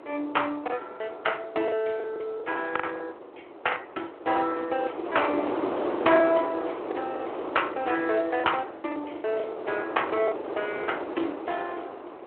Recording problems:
phone line; 280 Hz to 3.2 kHz, Speex
wind noise; below 830 Hz, SNR 6 dB
packet loss; 11% of the sound replaced, filled with the last packet

